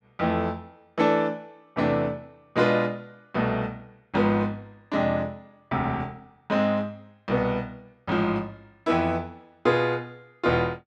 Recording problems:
none

